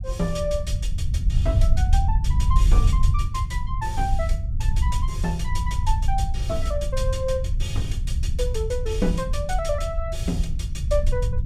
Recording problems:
low-frequency rumble; below 76 Hz, SNR -4 dB

